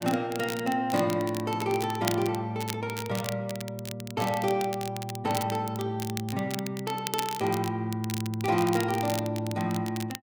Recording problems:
crackle; vinyl, SNR 10 dB

